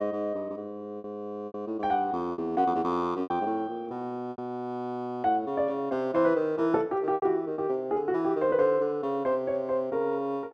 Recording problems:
packet loss; 5% of the sound replaced, filled with repeated pitch periods

